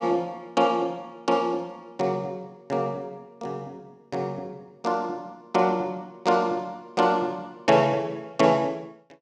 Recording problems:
none

